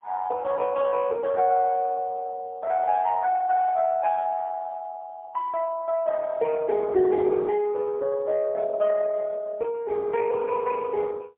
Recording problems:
phone line; 220 Hz to 3.3 kHz, AMR-NB, then MP3

